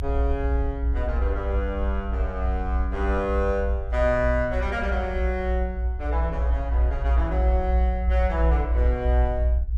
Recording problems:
low-frequency rumble; below 62 Hz, strongest tone 58 Hz, SNR -2 dB

